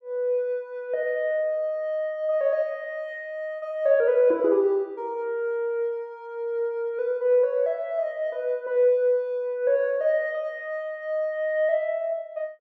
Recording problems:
none

